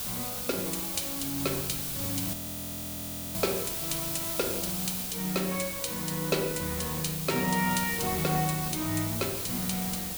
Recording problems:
background hiss; SNR 0 dB
wind on the microphone; below 290 Hz, SNR 17 dB
frozen audio; at 2.5 s for 1 s

